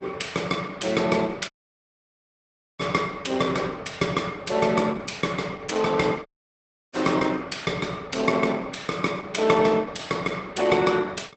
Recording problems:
codec artefacts; Opus, log-spectral distance 5 dB, nothing above 8.2 kHz
audio cutting out; at 1.5 s for 1.5 s and at 6.5 s for 0.5 s

